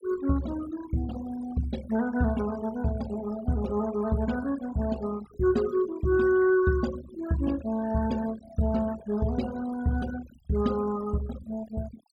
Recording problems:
denoising artefacts; signal-to-artefact ratio 17 dB

